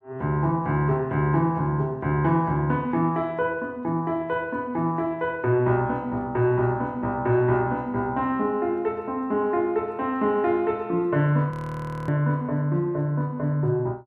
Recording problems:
frozen audio; at 12 s for 0.5 s

